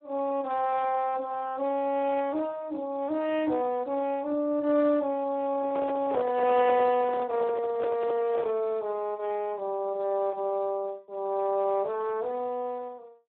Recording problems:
phone line; 260 Hz to 3.4 kHz, Speex
microphone handling noise; from 5.5 to 8.5 s; peak 0 dB vs average level

